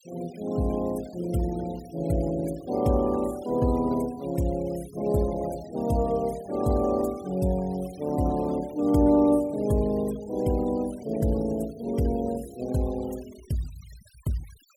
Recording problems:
denoising artefacts; signal-to-artefact ratio 22 dB

